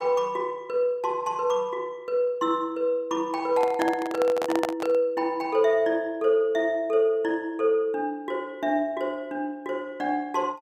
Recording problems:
microphone handling noise; from 3.5 to 5 s; peak +3 dB vs average level

